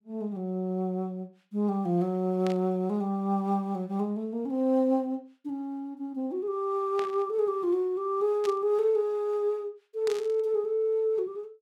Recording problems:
static burst; 4 times, first at 2.5 s; peak -7 dB vs average level

